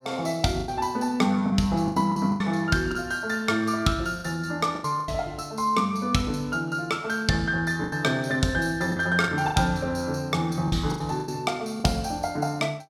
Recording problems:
lost packets; 8% of the sound replaced, filled with the last packet

